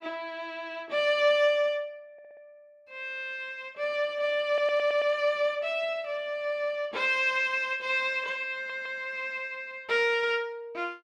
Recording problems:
audio stuttering; at 2 s, at 4.5 s and at 8.5 s

